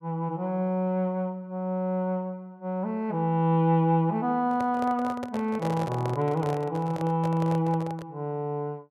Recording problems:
microphone handling noise; from 4.5 to 8 s; peak -3 dB vs average level

